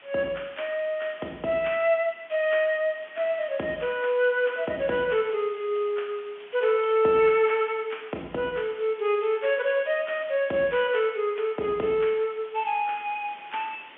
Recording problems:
phone line; 170 Hz to 3.4 kHz, G.711
background hiss; SNR 23 dB

